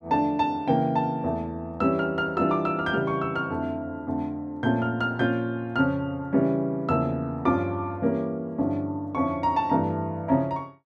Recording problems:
none

